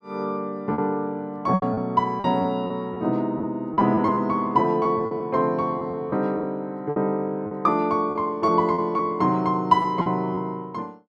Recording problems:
lost packets; 8% of the sound replaced, filled with repeated pitch periods

